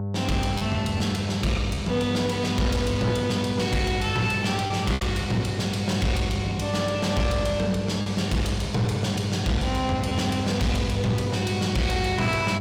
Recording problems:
distorted audio; soft clipping, signal-to-distortion ratio 10 dB
hum; 50 Hz, harmonics up to 900 Hz, SNR 5 dB
packet loss; 1.8% of the sound replaced, filled with repeated pitch periods

